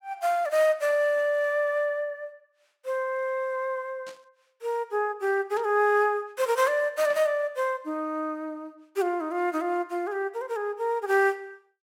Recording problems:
burst of static; at 4 s, at 5.5 s and at 7 s; peak -15 dB vs average level

